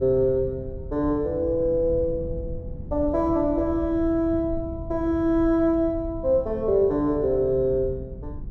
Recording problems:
low-frequency rumble; below 120 Hz, SNR 13 dB

